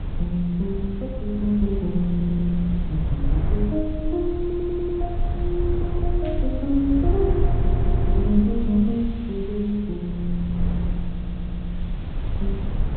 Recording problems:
treble cut off; nothing above 4 kHz
hiss; SNR 25 dB
rumble; below 88 Hz, SNR 2 dB
stutter; 4 times, first at 2 s
burst of static; at 6.5 s; peak -14 dB vs average level

